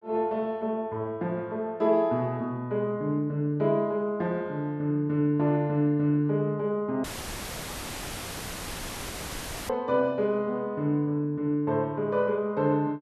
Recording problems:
dropout; at 7 s for 2.5 s; filled with static

